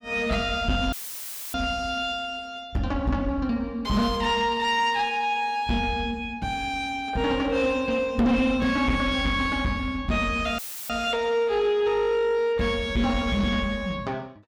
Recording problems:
distortion; soft clipping, signal-to-distortion ratio 11 dB
dropout; at 1 s for 0.5 s and at 11 s; filled with static

